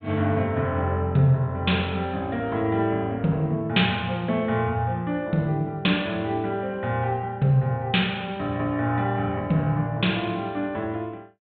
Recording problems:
treble cut off; nothing above 4 kHz

